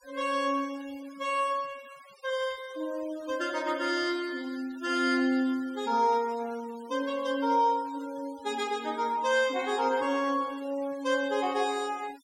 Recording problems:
denoising artefacts; signal-to-artefact ratio 21 dB

